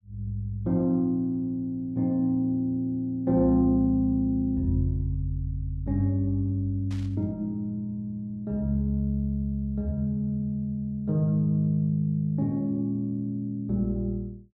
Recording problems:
burst of static; at 7 s; peak -16 dB vs average level

